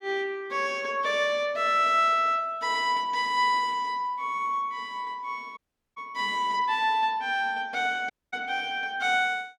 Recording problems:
audio cutting out; at 5.5 s and at 8 s

